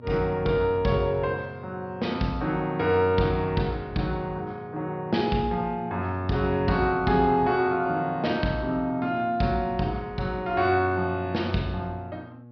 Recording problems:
low-pass filter; nothing above 5.5 kHz
hum; 60 Hz, harmonics up to 1.1 kHz, SNR 21 dB

